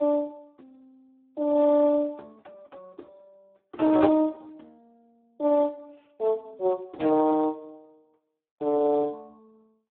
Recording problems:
telephone audio; 260 Hz to 2 kHz, Speex

